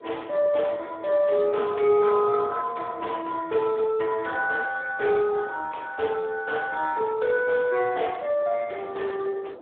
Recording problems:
phone line; 340 Hz to 3.4 kHz, Speex
wind on the microphone; below 620 Hz, SNR 21 dB

